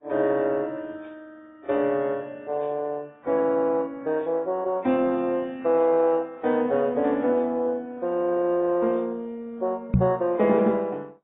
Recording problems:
codec artefacts; MP2, then AAC, log-spectral distance 2 dB, nothing above 3.5 kHz
knock on the microphone; at 10 s; peak +8 dB vs average level

